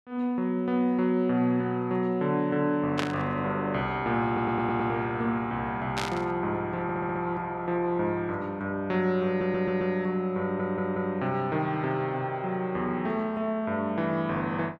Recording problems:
burst of static; at 3 s and at 6 s; peak +2 dB vs average level
audio stuttering; 4 times, first at 4.5 s

